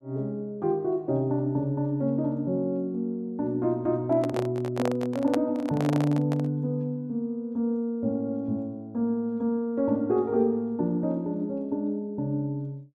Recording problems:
microphone handling noise; from 4 to 6.5 s; peak +2 dB vs average level

